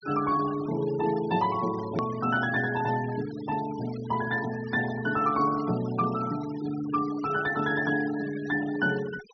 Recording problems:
low-pass filter; nothing above 6 kHz
noise reduction artefacts; signal-to-artefact ratio 16 dB
hard cut with a click; at 2 s

